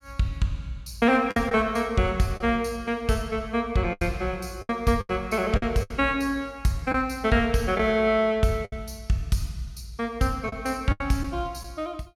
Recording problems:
packet loss; 6% of the sound replaced, filled with the last packet

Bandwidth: 16.5 kHz